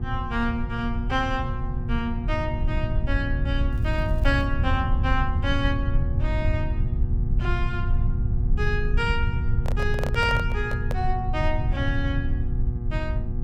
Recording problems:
electrical hum; 60 Hz, harmonics up to 1.2 kHz, SNR 7 dB
rumble; below 92 Hz, SNR -2 dB
crackle; at 3.5 s; loose cable, SNR 29 dB
handling noise; from 9.5 to 11 s; peak +2 dB vs average level

